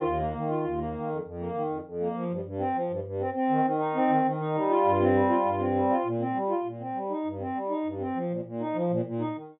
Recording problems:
low-pass filter; nothing above 4 kHz

